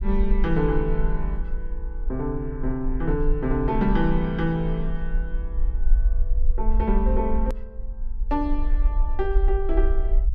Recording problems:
rumble; below 44 Hz, strongest tone 20 Hz, SNR 1 dB
click at an edit; at 7.5 s

